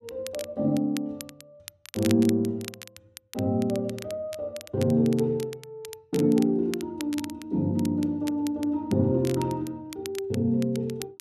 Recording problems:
crackle; vinyl, SNR 16 dB

